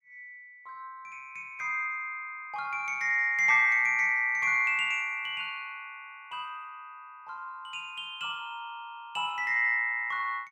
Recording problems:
none

